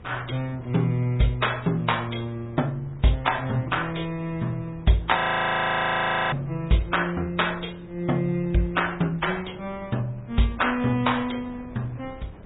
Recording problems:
low-pass filter; nothing above 3.8 kHz
lossy codec; MP3, log-spectral distance 4 dB
wind on the microphone; below 390 Hz, SNR 20 dB
frozen audio; at 5 s for 1 s

